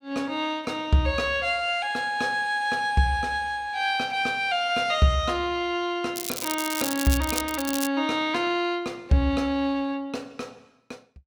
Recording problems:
crackle; from 6 to 8 s; loose cable, SNR 5 dB

